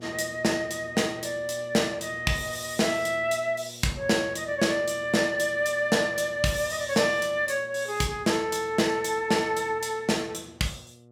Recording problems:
hum; 60 Hz, harmonics up to 1.2 kHz, SNR 23 dB

